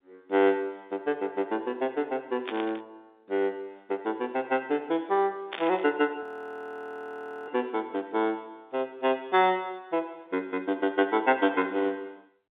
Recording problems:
phone line; 240 Hz to 3.7 kHz, G.711
static burst; at 2.5 s and at 5.5 s; peak -3 dB vs average level
audio freezing; at 6 s for 1 s

